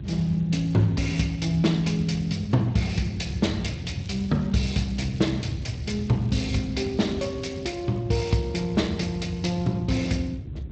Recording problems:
codec artefacts; Speex, log-spectral distance 4 dB, nothing above 7.8 kHz
mains hum; 50 Hz, harmonics up to 700 Hz, SNR 23 dB
wind noise; below 160 Hz, SNR 10 dB
crackle; from 4 to 6.5 s and at 7 s; loose cable, SNR 29 dB

